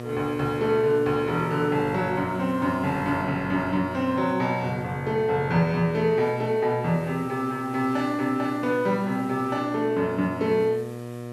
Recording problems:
electrical hum; 60 Hz, harmonics up to 1.9 kHz, SNR 13 dB
hiss; slope -2 dB per octave, SNR 28 dB

